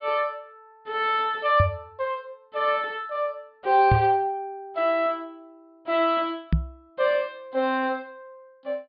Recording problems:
treble cut off; nothing above 5 kHz
knock on the microphone; at 1.5 s, at 4 s and at 6.5 s; peak +6 dB vs average level

